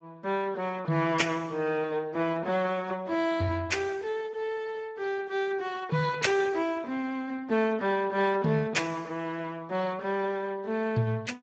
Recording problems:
lossy compression; Speex, log-spectral distance 3 dB, nothing above 7.6 kHz

